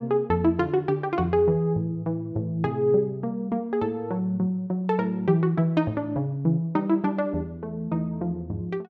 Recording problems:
none

